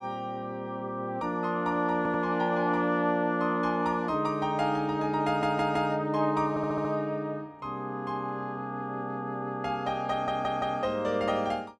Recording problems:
stutter; 4 times, first at 2 s

